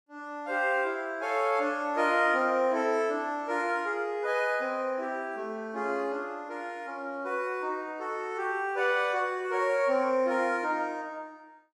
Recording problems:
none

